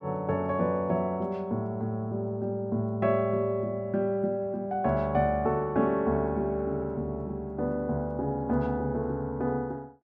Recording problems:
none

